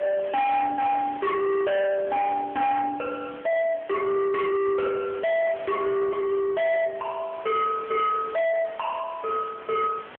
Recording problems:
telephone audio; 690 Hz to 2.8 kHz, AMR-NB
distorted audio; soft clipping, signal-to-distortion ratio 7 dB
background hiss; SNR 20 dB

